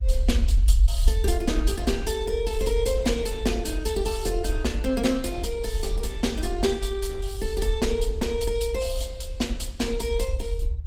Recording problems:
codec artefacts; Opus, log-spectral distance 2 dB
rumble; below 60 Hz, SNR 1 dB

